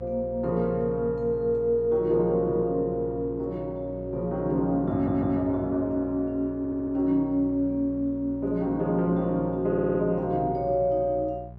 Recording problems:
hum; 60 Hz, harmonics up to 600 Hz, SNR 15 dB
audio stuttering; at 5 s, at 6.5 s and at 9.5 s

